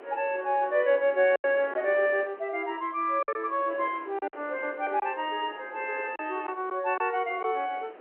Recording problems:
phone line; 300 Hz to 3.3 kHz, G.711
wind noise; below 1 kHz, SNR 19 dB
packet loss; 4% of the sound replaced, filled with silence

